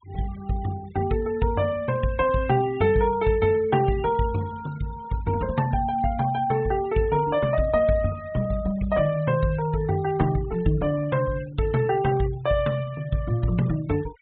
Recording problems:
treble cut off; nothing above 4 kHz
denoising artefacts; signal-to-artefact ratio 21 dB

